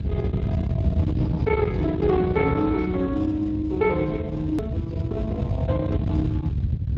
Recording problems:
lossy codec; Speex, log-spectral distance 2 dB
distorted audio; soft clipping, signal-to-distortion ratio 11 dB
low-frequency rumble; below 170 Hz, SNR 3 dB
hard cut with a click; at 4.5 s

